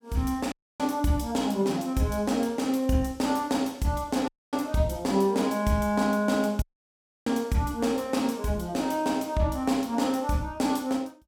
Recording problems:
dropout; at 0.5 s, at 4.5 s and at 6.5 s for 0.5 s

